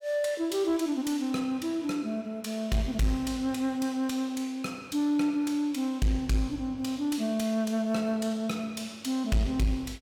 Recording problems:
distorted audio; soft clipping, signal-to-distortion ratio 11 dB

